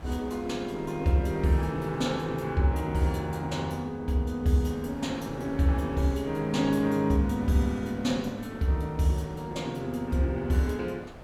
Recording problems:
wind on the microphone; below 900 Hz, SNR 18 dB

